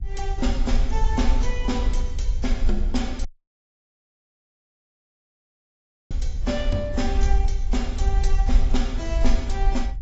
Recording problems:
lossy codec; AAC, log-spectral distance 2 dB, nothing above 7.6 kHz
rumble; below 50 Hz, strongest tone 20 Hz, SNR -4 dB
dropout; at 3.5 s for 3 s

